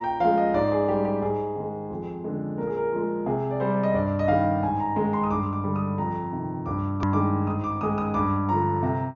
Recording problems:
treble missing; nothing above 6.8 kHz
click at an edit; at 7 s

